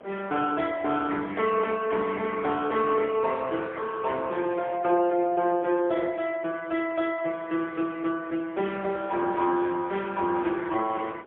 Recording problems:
phone line; 280 Hz to 2.7 kHz, AMR-NB, then MP3
wind on the microphone; below 790 Hz, SNR 24 dB

